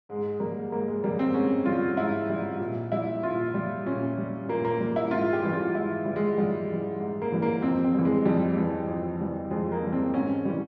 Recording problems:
none

